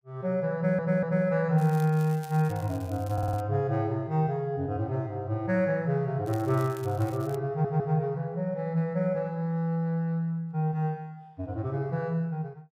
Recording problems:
audio stuttering; at 0.5 s, at 3 s and at 7.5 s
crackling; from 1.5 to 3.5 s and from 6.5 to 7.5 s; loose cable, SNR 23 dB

